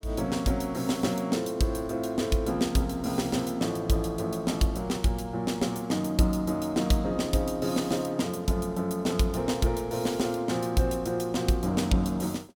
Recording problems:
none

